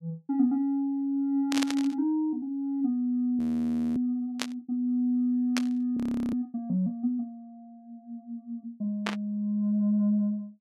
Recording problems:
burst of static; 4 times, first at 1.5 s; peak +2 dB vs average level
frozen audio; at 3.5 s for 0.5 s and at 6 s

